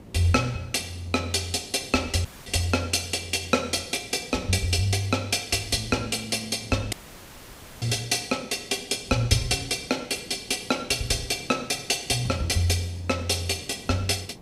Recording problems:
hiss; SNR 21 dB
dropout; at 2.5 s and at 7 s for 1 s

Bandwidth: 15.5 kHz